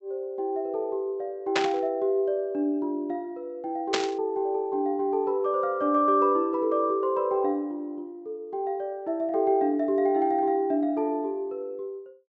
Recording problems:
treble cut off; nothing above 7.9 kHz
static burst; at 1.5 s and at 4 s; peak +4 dB vs average level

